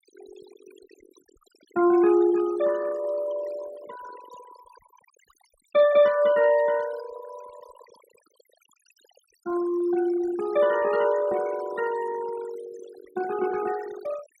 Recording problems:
denoising artefacts; signal-to-artefact ratio 19 dB

